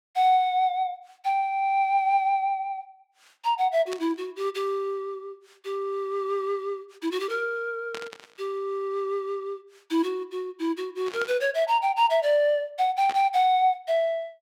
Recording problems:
static burst; 4 times, first at 4 s; peak -6 dB vs average level

